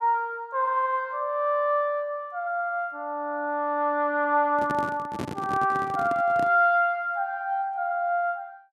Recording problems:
handling noise; from 4.5 to 6.5 s; peak -3 dB vs average level

